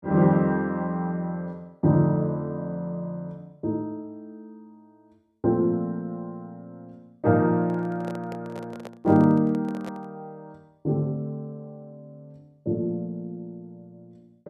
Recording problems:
microphone handling noise; from 7.5 to 10 s; peak -10 dB vs average level

